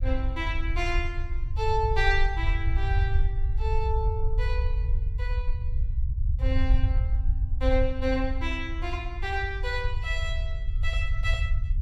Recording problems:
rumble; below 68 Hz, SNR -2 dB

